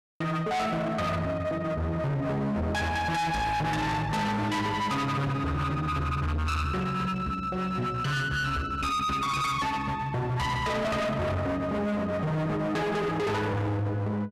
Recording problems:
distorted audio; hard clipping, signal-to-distortion ratio 6 dB

